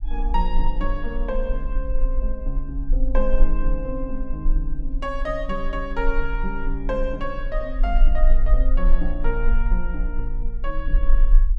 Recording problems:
rumble; below 36 Hz, strongest tone 20 Hz, SNR -4 dB

